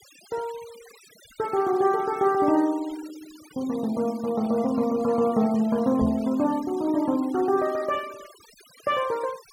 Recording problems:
denoising artefacts; signal-to-artefact ratio 21 dB
knock on the microphone; at 6 s; peak -3 dB vs average level

